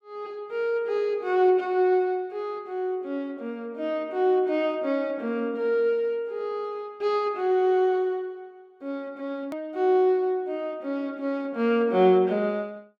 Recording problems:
edit click; at 9.5 s

